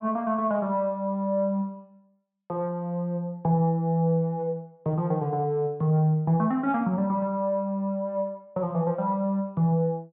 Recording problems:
treble missing; nothing above 4 kHz

